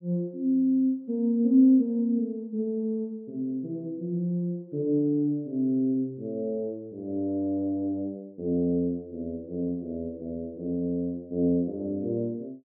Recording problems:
none

